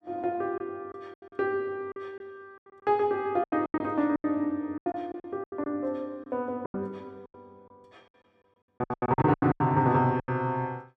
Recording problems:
packet loss; 15% of the sound replaced, filled with silence

